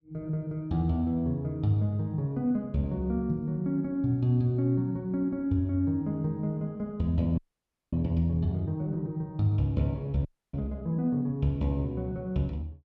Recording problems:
audio freezing; at 7.5 s for 0.5 s and at 10 s

